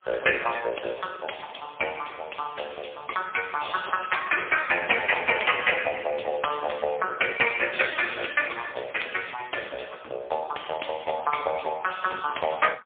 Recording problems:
telephone audio; 370 Hz to 3.4 kHz, AMR-NB, then MP3

